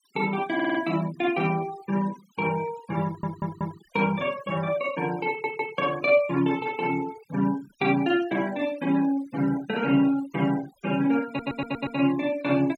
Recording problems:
denoising artefacts; signal-to-artefact ratio 18 dB
stutter; 4 times, first at 0.5 s

